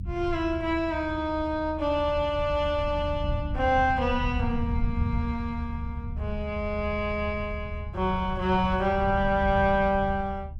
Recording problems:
low-frequency rumble; below 100 Hz, SNR 7 dB

